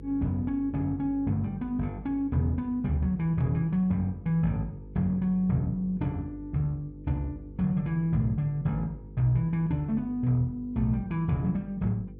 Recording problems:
hum; 50 Hz, harmonics up to 500 Hz, SNR 17 dB

